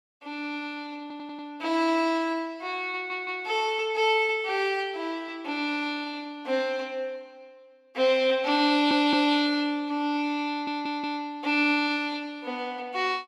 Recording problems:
audio stuttering; 4 times, first at 1 s

